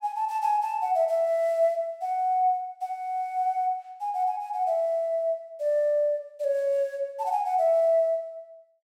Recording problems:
none

